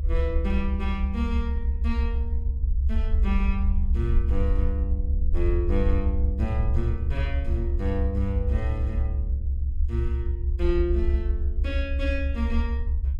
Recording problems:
rumble; below 70 Hz, SNR -5 dB

